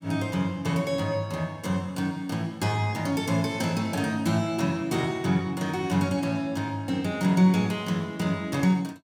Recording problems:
none

